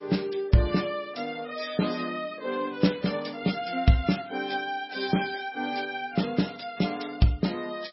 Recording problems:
lossy codec; MP3, log-spectral distance 5 dB, nothing above 5.5 kHz

